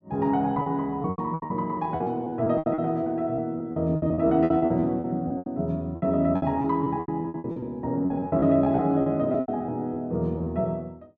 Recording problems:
packet loss; 17% of the sound replaced, filled with repeated pitch periods

